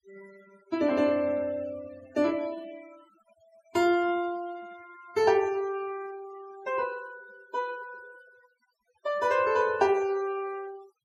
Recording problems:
denoising artefacts; signal-to-artefact ratio 22 dB

